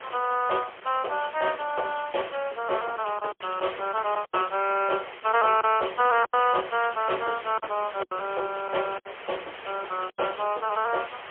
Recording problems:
phone line; 320 Hz to 3.2 kHz, AMR-NB, then MP3
hiss; SNR 14 dB
lost packets; 5% of the sound replaced, filled with silence

